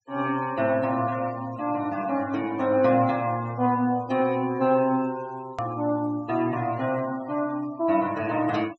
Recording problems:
treble cut off; nothing above 7.9 kHz
noise reduction artefacts; signal-to-artefact ratio 21 dB
click at an edit; at 5.5 s

